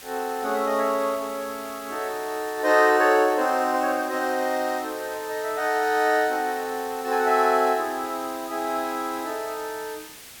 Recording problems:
background hiss; slope 0 dB per octave, SNR 17 dB

